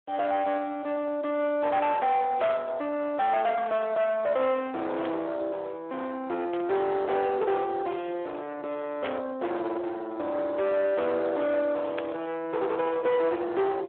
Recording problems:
telephone audio; 370 Hz to 2.7 kHz, Speex
distortion; soft clipping, signal-to-distortion ratio 9 dB
static burst; 5 times, first at 2.5 s; peak -4 dB vs average level

